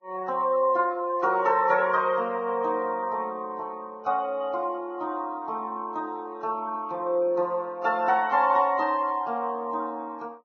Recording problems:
lossy compression; Vorbis, log-spectral distance 2 dB, nothing above 6.3 kHz

